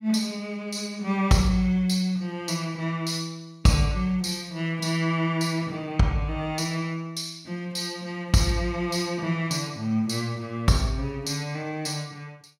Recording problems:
none

